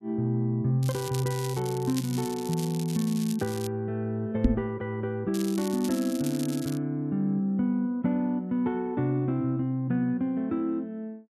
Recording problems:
crackling; from 1 to 3.5 s and from 5.5 to 7 s; loose cable, SNR 13 dB
knock on the microphone; at 4.5 s; peak +10 dB vs average level

